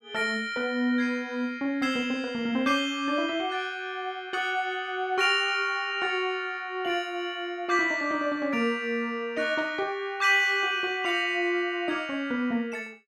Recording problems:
none

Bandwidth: 15 kHz